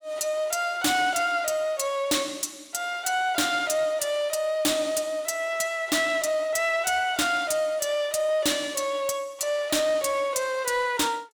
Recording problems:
distortion; soft clipping, signal-to-distortion ratio 7 dB

